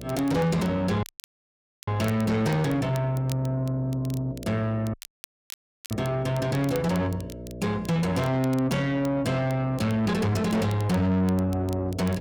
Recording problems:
distorted audio; soft clipping, signal-to-distortion ratio 8 dB
electrical hum; 60 Hz, harmonics up to 660 Hz, SNR 16 dB
crackling; vinyl, SNR 21 dB
dropout; at 1 s for 1 s and at 5 s for 1 s

